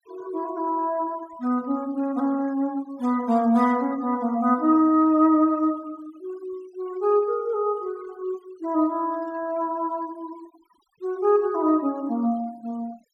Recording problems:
denoising artefacts; signal-to-artefact ratio 27 dB

